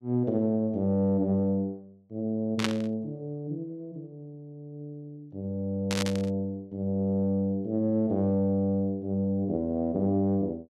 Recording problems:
static burst; at 2.5 s and at 6 s; peak +3 dB vs average level

